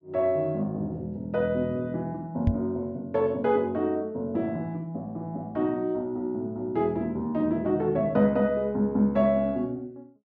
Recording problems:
treble missing; nothing above 8 kHz
knock on the microphone; at 2.5 s; peak +7 dB vs average level

